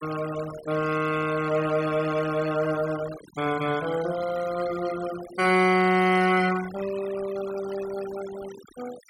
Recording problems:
denoising artefacts; signal-to-artefact ratio 15 dB

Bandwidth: 16.5 kHz